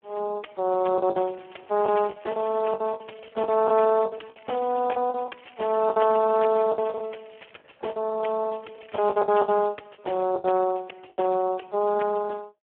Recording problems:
telephone audio; 300 Hz to 2.1 kHz, Speex
lost packets; 11% of the sound replaced, filled with the last packet
crackle; from 1.5 to 5 s, from 5.5 to 7.5 s and from 8.5 to 9.5 s; loose cable, SNR 28 dB

